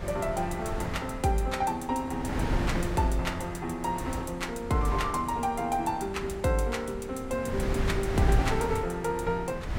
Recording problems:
wind on the microphone; below 320 Hz, SNR 6 dB

